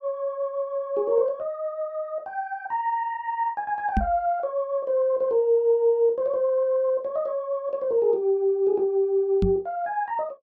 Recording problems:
knock on the microphone; at 4 s and at 9.5 s; peak +4 dB vs average level

